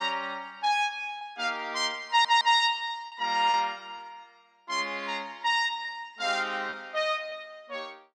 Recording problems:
lost packets; 3% of the sound replaced, filled with repeated pitch periods
stutter; at 2 s

